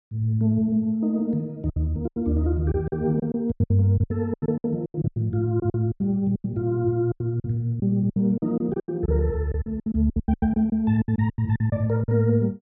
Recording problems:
lost packets; 17% of the sound replaced, filled with silence

